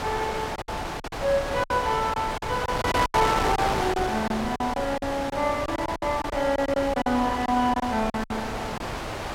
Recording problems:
wind on the microphone; below 1.9 kHz, SNR 4 dB
packet loss; 12% of the sound replaced, filled with silence

